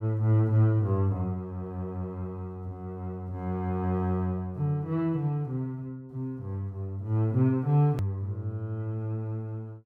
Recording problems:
edit click; at 8 s

